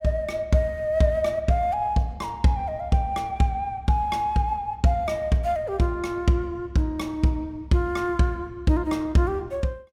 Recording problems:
none

